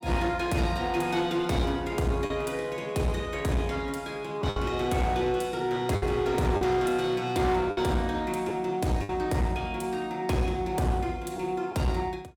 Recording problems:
distorted audio; hard clipping, uneven, signal-to-distortion ratio 10 dB
lost packets; 3% of the sound replaced, filled with the last packet

